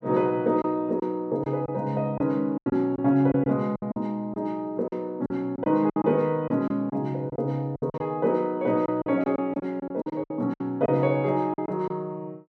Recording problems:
packet loss; 10% of the sound replaced, filled with silence

